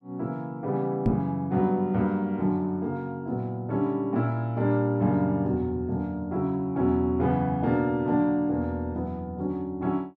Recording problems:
microphone bump; at 1 s; peak +6 dB vs average level

